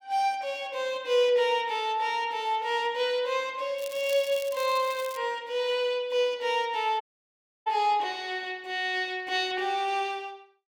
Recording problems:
crackling; from 4 to 5 s; loose cable, SNR 16 dB
dropout; at 7 s for 0.5 s

